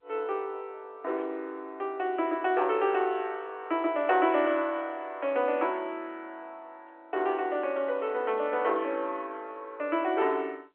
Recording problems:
phone line; 300 Hz to 3.6 kHz, G.711

